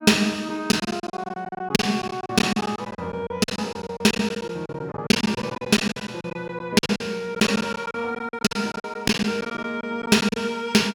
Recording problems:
packet loss; 17% of the sound replaced, filled with silence

